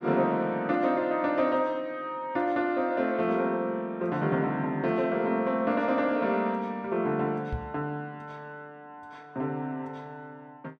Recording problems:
knock on the microphone; at 7.5 s; peak -1 dB vs average level

